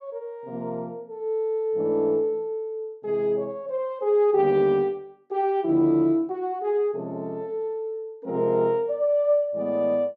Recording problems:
none

